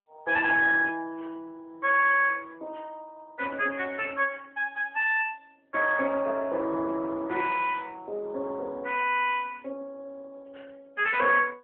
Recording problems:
phone line; 300 Hz to 3.4 kHz, AMR-NB

